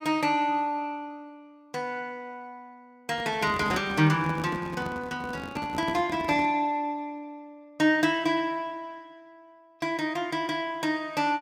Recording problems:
microphone handling noise; from 3 to 6.5 s; peak -3 dB vs average level

